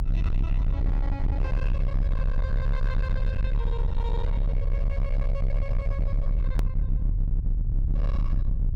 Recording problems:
distorted audio; hard clipping, signal-to-distortion ratio 7 dB
low-frequency rumble; below 66 Hz, strongest tone 30 Hz, SNR -11 dB
click at an edit; at 6.5 s

